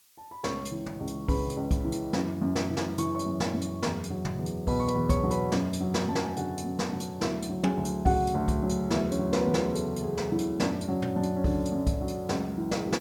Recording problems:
background hiss; slope +3 dB per octave, SNR 28 dB

